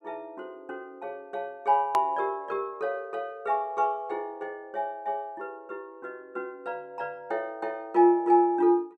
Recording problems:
edit click; at 2 s

